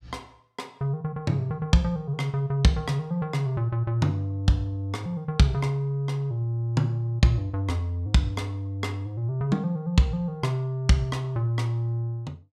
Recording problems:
none

